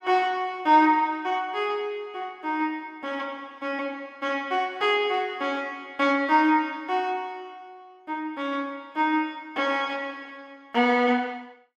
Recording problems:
none

